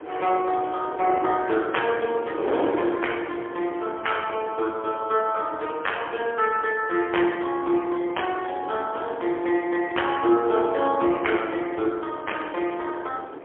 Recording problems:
telephone audio; 280 Hz to 3.3 kHz, AMR-NB, then MP3
wind on the microphone; below 660 Hz, SNR 10 dB

